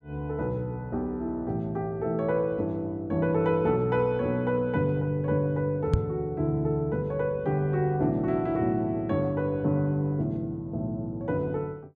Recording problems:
knock on the microphone; at 6 s; peak +7 dB vs average level

